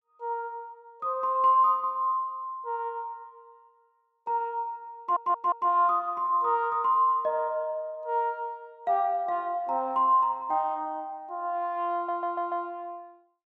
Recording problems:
audio stuttering; at 5 s and at 12 s

